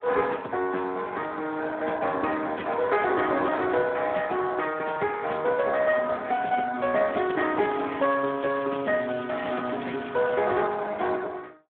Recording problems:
telephone audio; 280 Hz to 3.7 kHz, Speex
crackle; from 7 to 10 s; loose cable, SNR 18 dB

